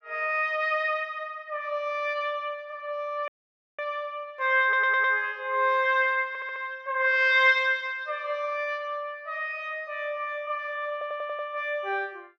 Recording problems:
dropout; at 3.5 s for 0.5 s
audio stuttering; at 4.5 s, at 6.5 s and at 11 s

